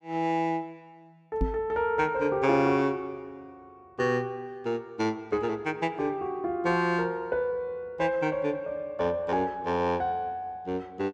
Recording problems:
knock on the microphone; at 1.5 s; peak +4 dB vs average level

